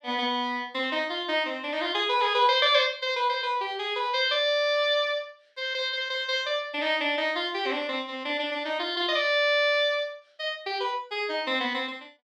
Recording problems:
none

